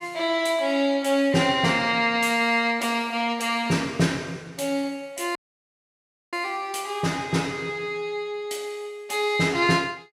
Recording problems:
audio cutting out; at 5.5 s for 1 s

